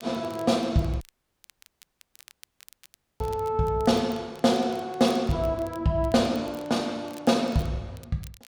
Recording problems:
crackle; vinyl, SNR 26 dB
dropout; at 1 s for 2 s

